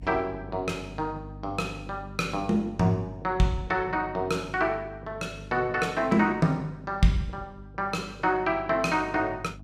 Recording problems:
hum; 50 Hz, harmonics up to 300 Hz, SNR 17 dB

